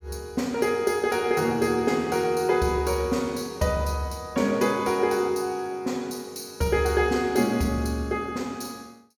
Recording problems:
none

